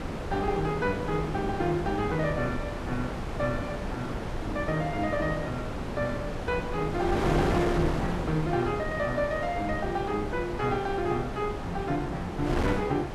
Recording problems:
wind on the microphone; below 730 Hz, SNR 3 dB

